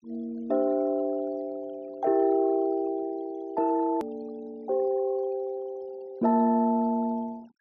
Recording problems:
treble missing; nothing above 6.3 kHz
noise reduction artefacts; signal-to-artefact ratio 28 dB
hard cut with a click; at 4 s

